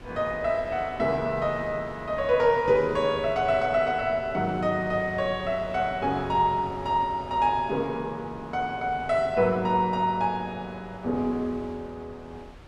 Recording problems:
wind noise; below 660 Hz, SNR 19 dB

